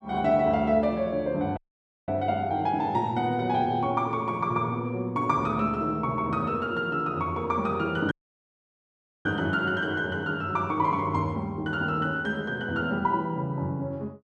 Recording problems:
audio cutting out; at 1.5 s for 0.5 s and at 8 s for 1 s

